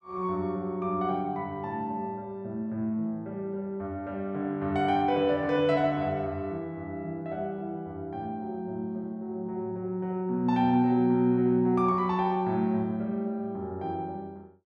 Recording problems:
none

